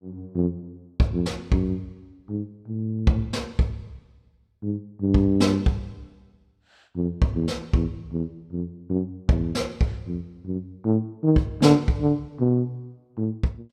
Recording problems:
none

